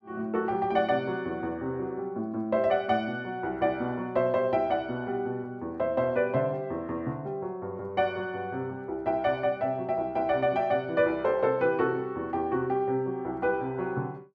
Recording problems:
none

